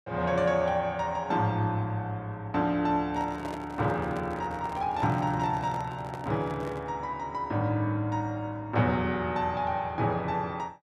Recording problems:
handling noise; from 3 to 7 s; peak -5 dB vs average level

